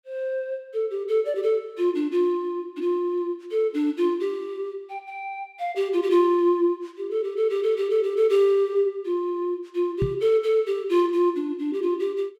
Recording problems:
microphone thump; at 10 s; peak +2 dB vs average level

